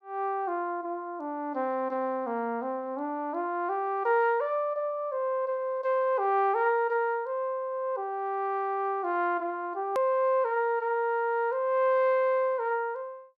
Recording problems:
hard cut with a click; at 10 s

